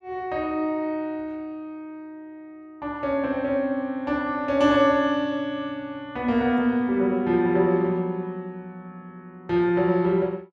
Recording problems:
none

